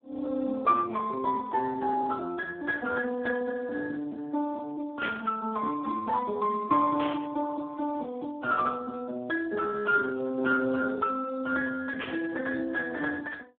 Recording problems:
phone line; 240 Hz to 2.1 kHz, Speex
static burst; at 5 s, at 7 s and at 12 s; peak -2 dB vs average level

